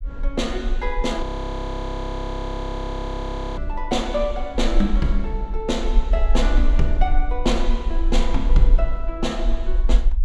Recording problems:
rumble; below 42 Hz, strongest tone 24 Hz, SNR -1 dB
frozen audio; at 1 s for 2.5 s

